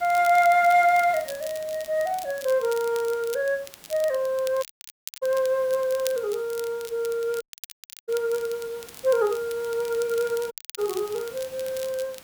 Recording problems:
hiss; slope -2 dB per octave, SNR 21 dB
crackling; vinyl, SNR 17 dB
audio cutting out; at 4.5 s for 0.5 s, at 7.5 s for 0.5 s and at 11 s

